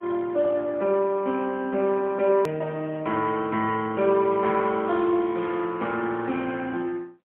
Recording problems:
phone line; 220 Hz to 3.2 kHz, AMR-NB, then MP3
click at an edit; at 2.5 s

